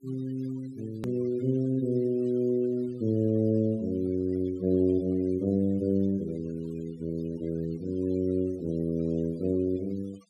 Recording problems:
noise reduction artefacts; signal-to-artefact ratio 24 dB
click at an edit; at 1 s

